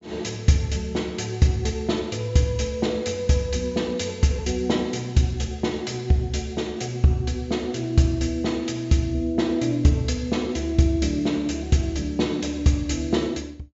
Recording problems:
low-pass filter; nothing above 8 kHz

